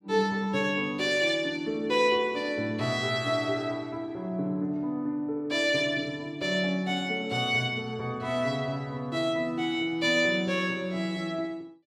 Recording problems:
none

